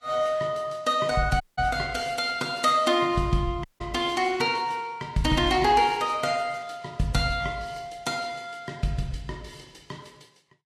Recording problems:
codec artefacts; Vorbis, log-spectral distance 3 dB, nothing above 13.5 kHz
audio cutting out; at 1.5 s and at 3.5 s

